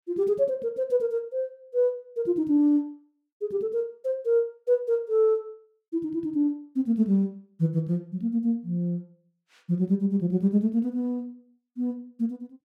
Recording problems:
none

